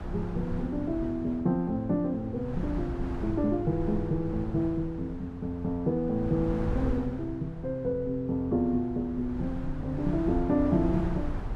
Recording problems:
wind noise; below 170 Hz, SNR 8 dB

